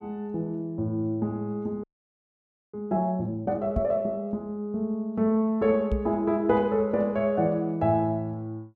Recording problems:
audio freezing; at 2 s for 1 s
microphone bump; at 4 s and at 6 s; peak +1 dB vs average level

